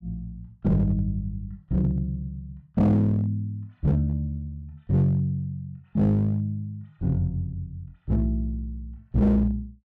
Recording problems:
distortion; hard clipping, uneven, signal-to-distortion ratio 10 dB

